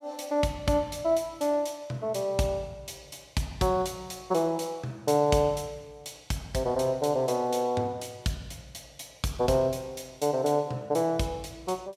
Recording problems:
none

